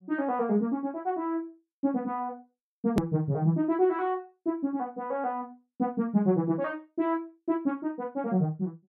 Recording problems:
hard cut with a click; at 3 s

